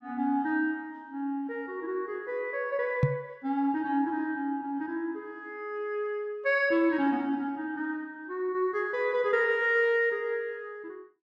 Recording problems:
knock on the microphone; at 3 s; peak +8 dB vs average level

